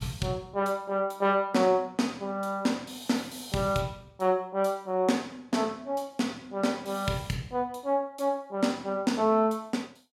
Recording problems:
none

